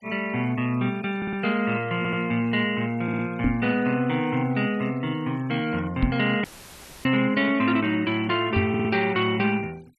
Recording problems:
denoising artefacts; signal-to-artefact ratio 24 dB
audio stuttering; 4 times, first at 1 s
microphone thump; at 3.5 s, at 6 s and at 8.5 s; peak +4 dB vs average level
audio cutting out; at 6.5 s for 0.5 s; filled with static

